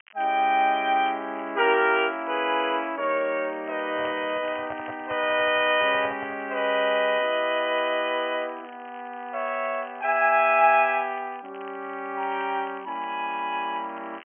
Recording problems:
low-pass filter; nothing above 3.1 kHz
crackling; vinyl, SNR 27 dB
microphone handling noise; from 4 to 6.5 s; peak -8 dB vs average level

